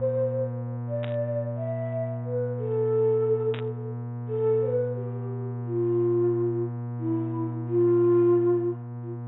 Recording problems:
low-pass filter; nothing above 3.8 kHz
mains hum; 60 Hz, harmonics up to 960 Hz, SNR 7 dB
burst of static; at 1 s and at 3.5 s; peak -8 dB vs average level

